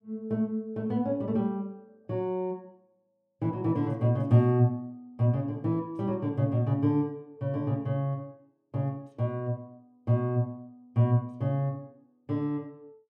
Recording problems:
none

